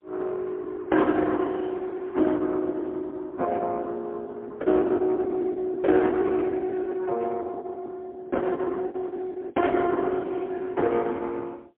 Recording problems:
telephone audio; 240 Hz to 3.4 kHz, AMR-NB, then MP3
lost packets; 15% of the sound replaced, filled with the last packet

